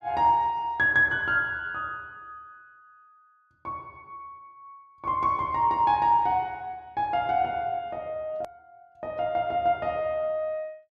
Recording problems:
click at an edit; at 8.5 s

